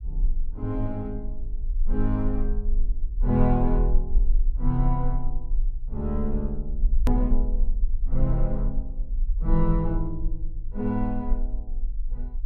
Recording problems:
rumble; below 38 Hz, strongest tone 22 Hz, SNR 1 dB
click at an edit; at 7 s

